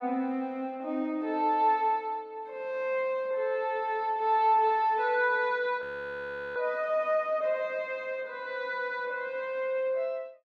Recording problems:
frozen audio; at 6 s for 0.5 s

